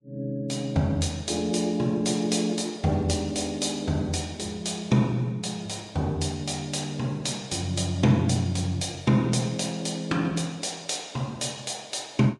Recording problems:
codec artefacts; Vorbis, log-spectral distance 3 dB

